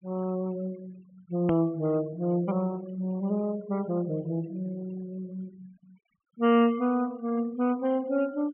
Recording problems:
treble missing; nothing above 3.2 kHz
denoising artefacts; signal-to-artefact ratio 23 dB
click at an edit; at 1.5 s

